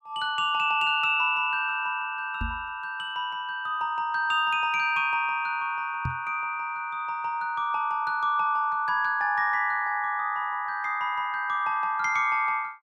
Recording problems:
microphone bump; at 2.5 s and at 6 s; peak -2 dB vs average level

